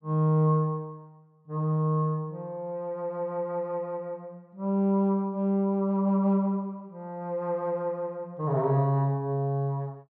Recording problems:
none

